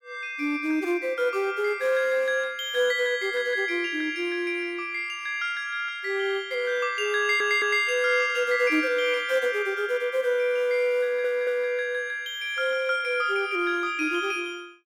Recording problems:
audio stuttering; at 7 s and at 11 s

